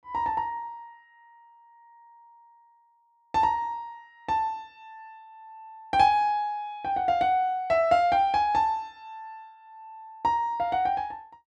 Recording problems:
none

